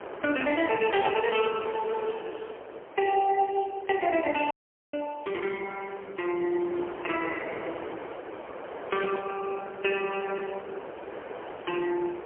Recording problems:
telephone audio; 320 Hz to 2.7 kHz, AMR-NB, then MP3
wind noise; below 980 Hz, SNR 11 dB
audio cutting out; at 4.5 s

